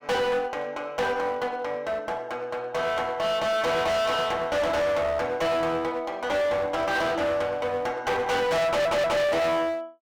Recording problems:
distortion; hard clipping, uneven, signal-to-distortion ratio 5 dB
stutter; at 8.5 s

